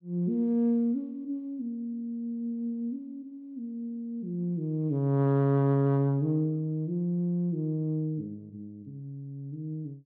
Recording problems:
none

